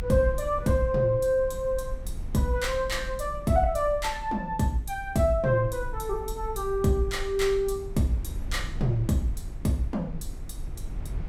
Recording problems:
rumble; below 66 Hz, SNR 11 dB

